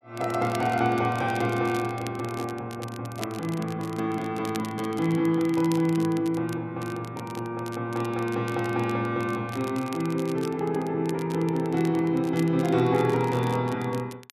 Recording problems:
crackling; vinyl, SNR 19 dB

